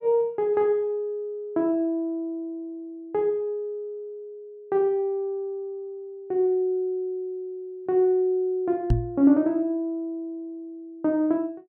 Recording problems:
microphone thump; at 9 s; peak +7 dB vs average level

